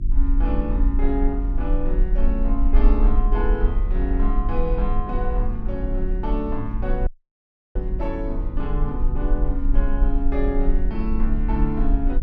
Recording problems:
hum; 50 Hz, harmonics up to 350 Hz, SNR 7 dB
low-frequency rumble; below 42 Hz, strongest tone 22 Hz, SNR -3 dB
audio cutting out; at 7 s for 0.5 s

